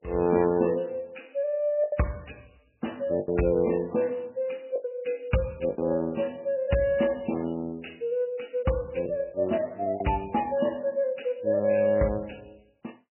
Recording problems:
lossy codec; MP3, log-spectral distance 4 dB, nothing above 2.9 kHz
packet loss; 4% of the sound replaced, filled with the last packet

